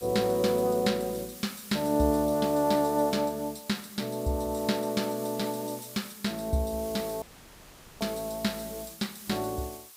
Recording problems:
hiss; SNR 14 dB
dropout; at 7 s for 1 s

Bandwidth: 15.5 kHz